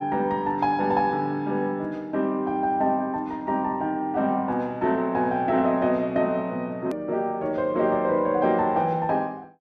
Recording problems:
edit click; at 7 s

